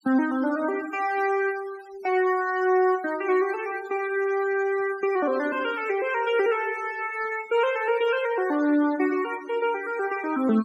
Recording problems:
noise reduction artefacts; signal-to-artefact ratio 18 dB

